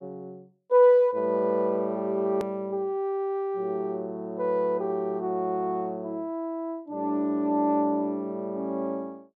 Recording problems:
click at an edit; at 2.5 s

